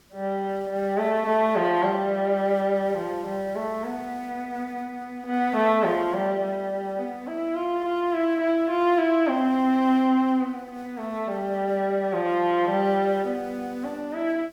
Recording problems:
background hiss; SNR 29 dB

